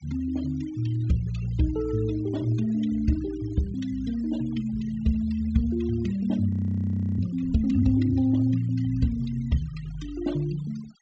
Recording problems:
treble cut off; nothing above 8 kHz
denoising artefacts; signal-to-artefact ratio 21 dB
frozen audio; at 6.5 s for 0.5 s

